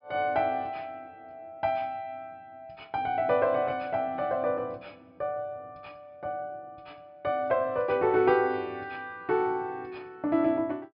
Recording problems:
low-pass filter; nothing above 5.5 kHz

